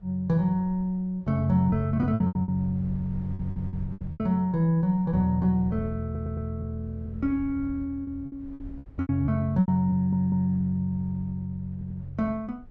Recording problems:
rumble; below 100 Hz, SNR 19 dB
packet loss; 8% of the sound replaced, filled with repeated pitch periods
stutter; 4 times, first at 3.5 s

